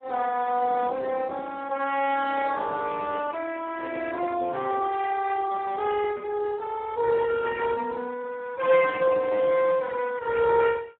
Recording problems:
phone line; 300 Hz to 2.3 kHz, Speex

